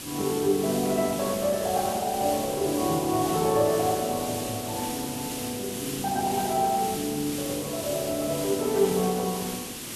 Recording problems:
lossy compression; AAC, then Opus, log-spectral distance 2 dB
background hiss; SNR 7 dB

